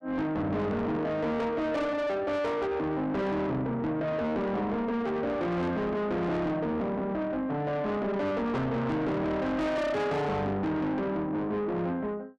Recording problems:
distorted audio; soft clipping, signal-to-distortion ratio 7 dB

